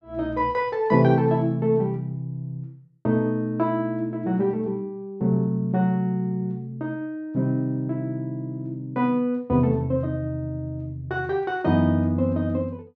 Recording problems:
none

